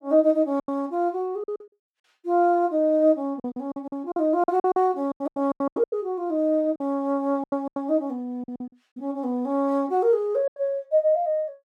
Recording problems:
packet loss; 12% of the sound replaced, filled with silence

